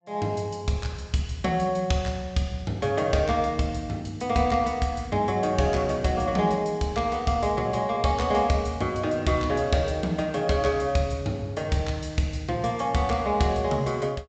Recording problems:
treble cut off; nothing above 8 kHz

